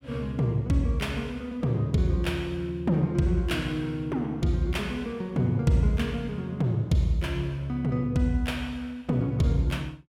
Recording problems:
none

